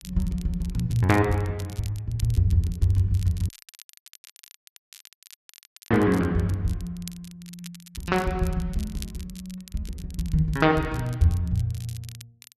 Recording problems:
crackle; vinyl, SNR 21 dB
audio cutting out; at 3.5 s for 2.5 s

